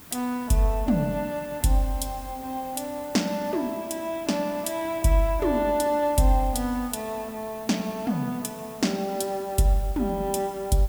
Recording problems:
background hiss; slope -3 dB per octave, SNR 18 dB

